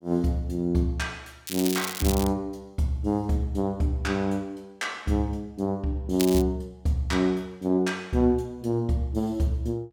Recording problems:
crackling; at 1.5 s and at 6 s; loose cable, SNR 7 dB

